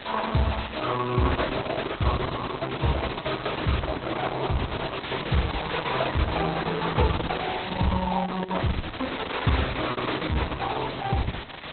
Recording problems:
codec artefacts; Opus, log-spectral distance 20 dB, nothing above 4.1 kHz
hiss; SNR 7 dB
lost packets; 1.2% of the sound replaced, filled with repeated pitch periods

